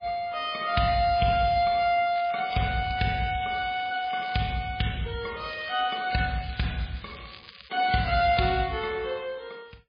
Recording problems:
lossy codec; MP3, log-spectral distance 6 dB, nothing above 4.2 kHz
crackle; from 2 to 4.5 s and from 5.5 to 8.5 s; loose cable, SNR 19 dB

